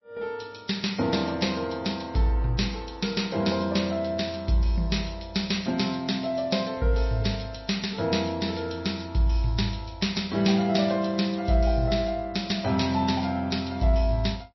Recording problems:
lossy codec; MP3, log-spectral distance 6 dB, nothing above 5.7 kHz

